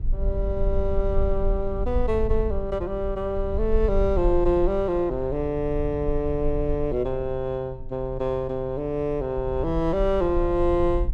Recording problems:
rumble; below 56 Hz, SNR 6 dB

